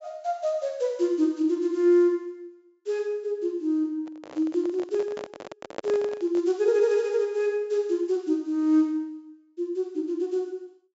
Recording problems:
low-pass filter; nothing above 8 kHz
handling noise; from 4 to 6.5 s; peak -3 dB vs average level

